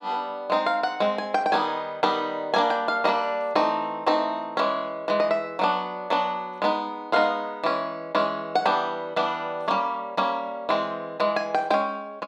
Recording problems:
none

